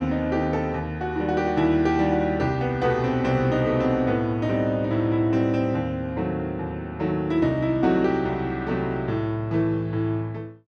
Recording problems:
none

